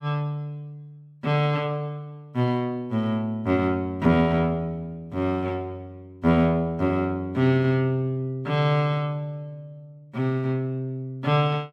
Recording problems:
none

